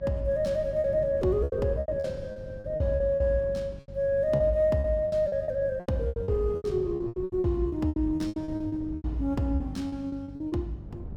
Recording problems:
mains hum; 50 Hz, harmonics up to 400 Hz, SNR 17 dB
wind noise; below 230 Hz, SNR 16 dB
packet loss; 17% of the sound replaced, filled with repeated pitch periods

